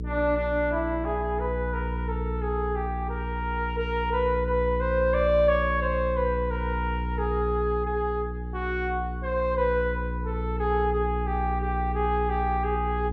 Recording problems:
hum; 60 Hz, harmonics up to 480 Hz, SNR 4 dB

